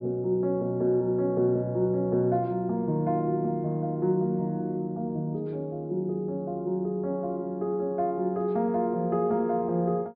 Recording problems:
treble cut off; nothing above 5.5 kHz

